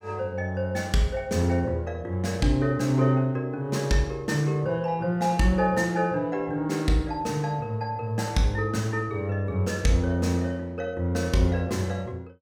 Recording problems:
none

